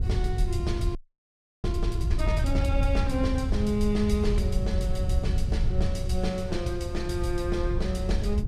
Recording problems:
wind on the microphone; below 86 Hz, SNR -1 dB
audio freezing; at 1 s for 0.5 s

